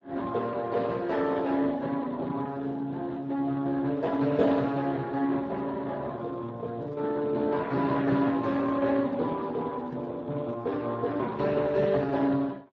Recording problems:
codec artefacts; Speex, log-spectral distance 3 dB

